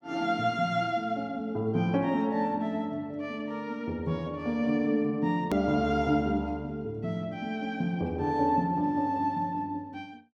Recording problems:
hard cut with a click; at 5.5 s

